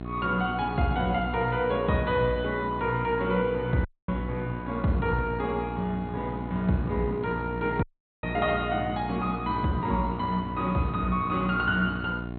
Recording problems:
lossy compression; MP2, log-spectral distance 2 dB, nothing above 3.8 kHz
hum; 60 Hz, harmonics up to 1.4 kHz, SNR 8 dB
dropout; at 4 s and at 8 s

